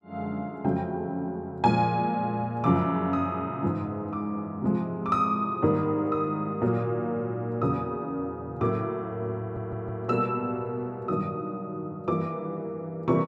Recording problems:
audio stuttering; at 9.5 s

